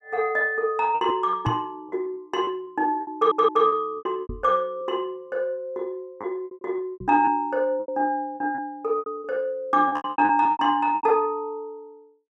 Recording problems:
lost packets; 13% of the sound replaced, filled with repeated pitch periods
microphone bump; at 1.5 s, at 4 s and at 7 s; peak +2 dB vs average level
audio stuttering; at 3 s

